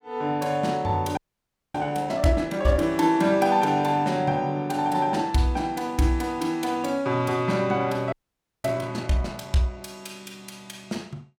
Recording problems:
audio freezing; at 1 s for 0.5 s and at 8 s for 0.5 s

